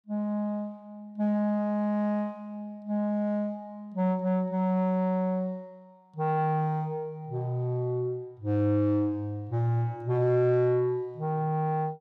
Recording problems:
distorted audio; soft clipping, signal-to-distortion ratio 11 dB

